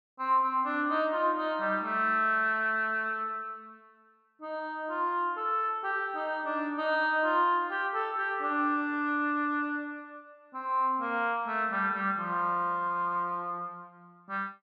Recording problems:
none

